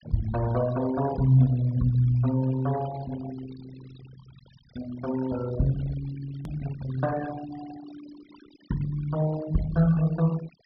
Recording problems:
treble missing; nothing above 5.5 kHz
noise reduction artefacts; signal-to-artefact ratio 17 dB
hard cut with a click; at 6.5 s

